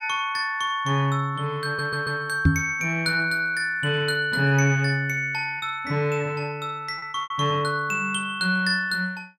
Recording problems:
packet loss; 2% of the sound replaced, filled with repeated pitch periods
audio stuttering; at 1.5 s
microphone bump; at 2.5 s; peak +9 dB vs average level

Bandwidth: 16 kHz